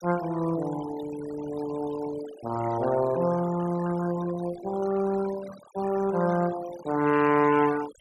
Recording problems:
noise reduction artefacts; signal-to-artefact ratio 15 dB

